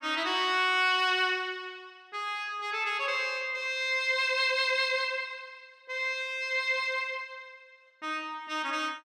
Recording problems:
none

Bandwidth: 14.5 kHz